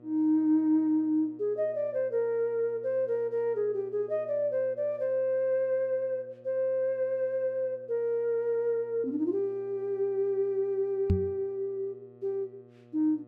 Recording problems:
hum; 60 Hz, harmonics up to 1.3 kHz, SNR 25 dB
microphone bump; at 11 s; peak +7 dB vs average level

